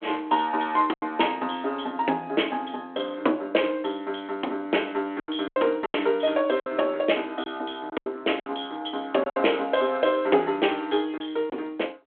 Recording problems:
phone line; 260 Hz to 3.4 kHz, G.726
packet loss; 6% of the sound replaced, filled with silence

